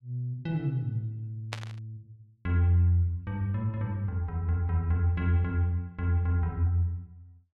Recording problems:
static burst; at 1.5 s; peak -2 dB vs average level

